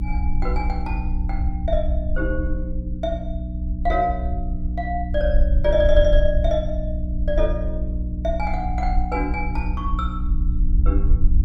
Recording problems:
hum; 60 Hz, harmonics up to 300 Hz, SNR 3 dB
rumble; below 54 Hz, SNR 1 dB

